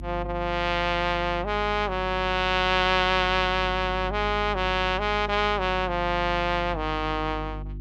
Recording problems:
mains hum; 50 Hz, harmonics up to 350 Hz, SNR 12 dB

